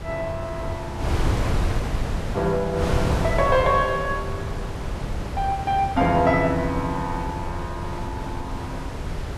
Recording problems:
wind on the microphone; below 360 Hz, SNR 4 dB

